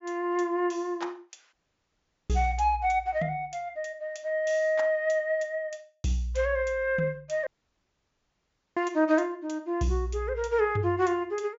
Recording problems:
treble missing; nothing above 7.3 kHz
audio cutting out; at 1.5 s for 1 s and at 7.5 s for 1.5 s

